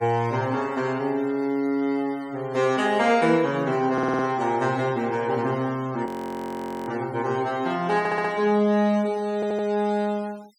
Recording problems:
denoising artefacts; signal-to-artefact ratio 24 dB
stutter; at 4 s, at 8 s and at 9.5 s
audio freezing; at 6 s for 1 s

